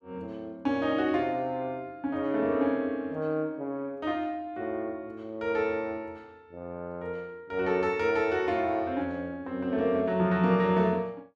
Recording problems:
none

